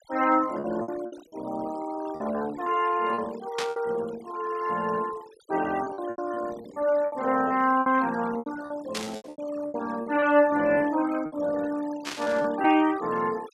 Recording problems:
denoising artefacts; signal-to-artefact ratio 17 dB
packet loss; 10% of the sound replaced, filled with repeated pitch periods
static burst; at 3.5 s, at 9 s and at 12 s; peak -1 dB vs average level

